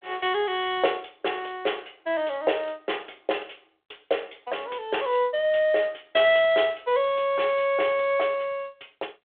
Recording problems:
telephone audio; 340 Hz to 3.6 kHz, G.726

